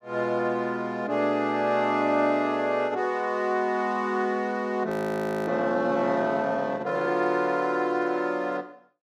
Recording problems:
frozen audio; at 5 s for 0.5 s

